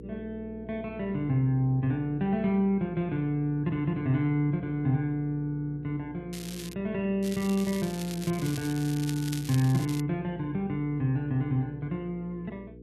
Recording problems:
hum; 60 Hz, harmonics up to 480 Hz, SNR 17 dB
crackle; at 6.5 s and from 7 to 10 s; loose cable, SNR 13 dB

